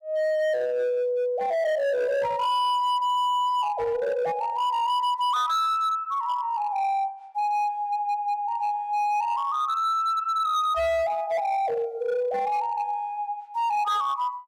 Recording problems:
distorted audio; hard clipping, signal-to-distortion ratio 11 dB

